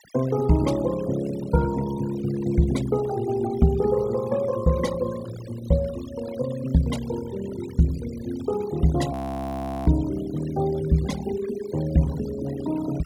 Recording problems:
denoising artefacts; signal-to-artefact ratio 17 dB
frozen audio; at 9 s for 0.5 s

